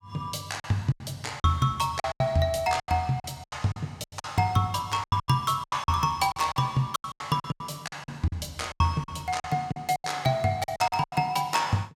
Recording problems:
lost packets; 16% of the sound replaced, filled with silence

